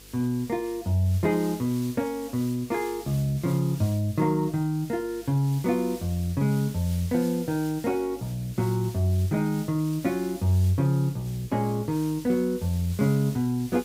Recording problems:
hum; 50 Hz, harmonics up to 500 Hz, SNR 28 dB
hiss; SNR 18 dB

